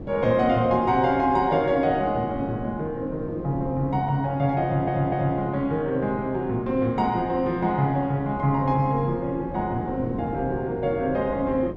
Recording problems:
wind noise; below 390 Hz, SNR 12 dB
audio stuttering; at 4.5 s

